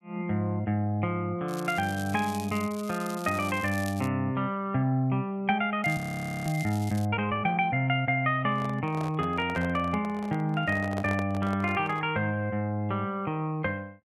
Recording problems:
crackle; from 1.5 to 4 s and from 6 to 7 s; loose cable, SNR 17 dB
frozen audio; at 6 s
microphone handling noise; from 8.5 to 12 s; peak -5 dB vs average level

